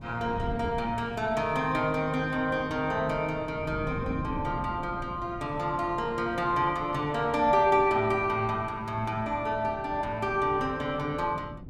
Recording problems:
wind noise; below 230 Hz, SNR 13 dB

